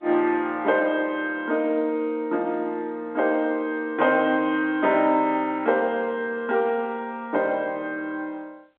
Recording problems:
telephone audio; 280 Hz to 3.7 kHz, G.711

